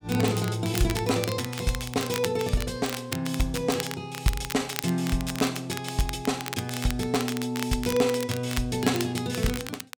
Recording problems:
crackling; vinyl, SNR 9 dB

